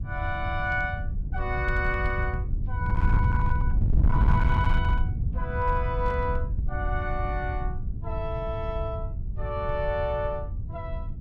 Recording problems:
distorted audio; hard clipping, signal-to-distortion ratio 11 dB
wind on the microphone; below 98 Hz, SNR -2 dB

